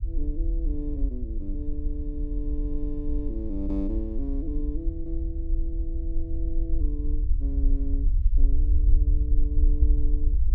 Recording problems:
rumble; below 54 Hz, SNR -8 dB

